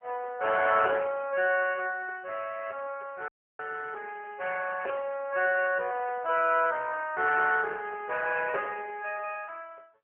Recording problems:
telephone audio; 370 Hz to 3.1 kHz, AMR-NB
dropout; at 3.5 s

